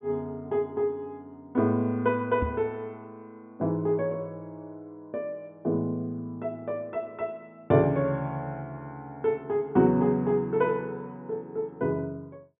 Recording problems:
low-pass filter; nothing above 3.6 kHz
knock on the microphone; at 2.5 s; peak +1 dB vs average level

